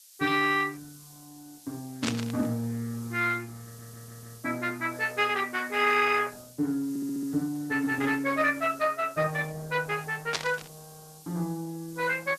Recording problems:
lossy codec; Vorbis, then Opus, log-spectral distance 4 dB
hiss; SNR 21 dB
burst of static; at 2 s and at 10 s; peak +3 dB vs average level
stutter; at 3.5 s and at 7 s

